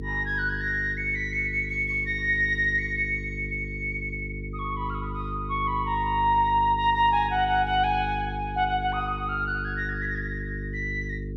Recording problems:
hum; 50 Hz, harmonics up to 450 Hz, SNR 9 dB

